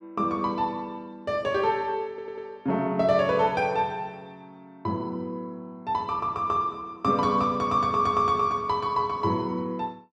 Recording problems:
stutter; at 2 s

